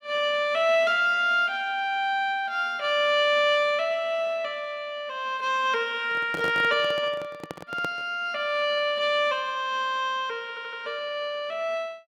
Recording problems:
handling noise; from 6 to 8 s; peak -5 dB vs average level
audio stuttering; at 10 s

